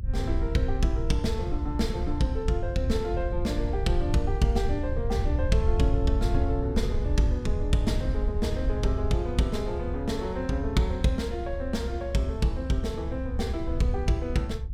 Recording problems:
low-frequency rumble; below 78 Hz, SNR 2 dB

